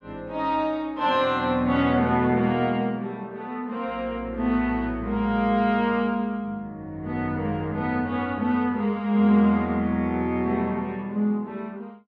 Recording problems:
none

